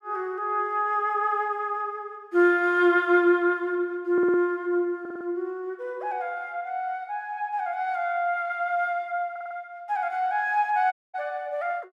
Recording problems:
audio stuttering; at 4 s, at 5 s and at 9.5 s
dropout; at 11 s

